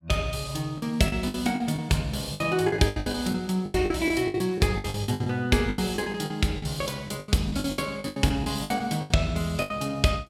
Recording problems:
lost packets; 18% of the sound replaced, filled with the last packet

